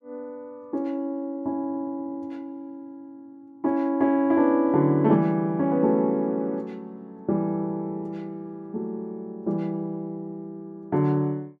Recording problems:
none

